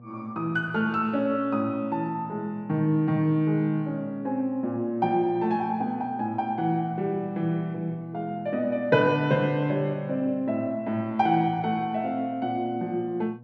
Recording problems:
electrical hum; 60 Hz, harmonics up to 840 Hz, SNR 21 dB

